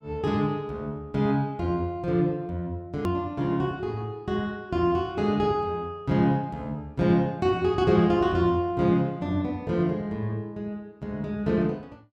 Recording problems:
click at an edit; at 3 s

